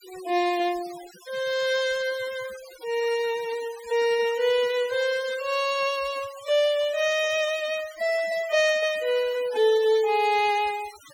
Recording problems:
denoising artefacts; signal-to-artefact ratio 18 dB

